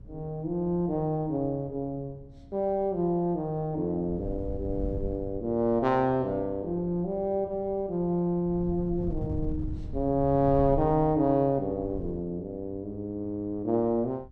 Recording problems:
wind noise; below 120 Hz, SNR 13 dB

